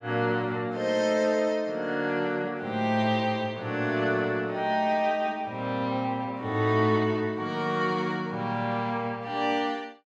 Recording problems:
none

